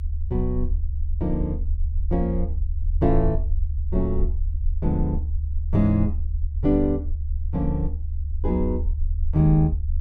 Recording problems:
low-frequency rumble; below 74 Hz, SNR 2 dB

